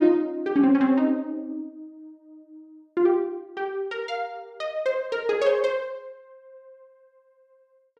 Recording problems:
none

